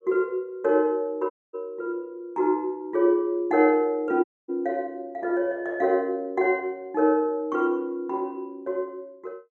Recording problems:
dropout; at 1.5 s and at 4 s

